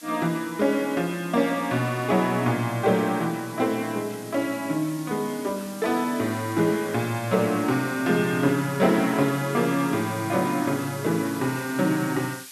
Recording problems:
background hiss; slope +4 dB per octave, SNR 17 dB

